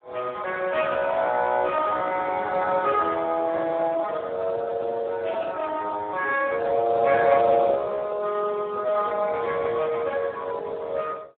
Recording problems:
telephone audio; 320 Hz to 2 kHz, Speex

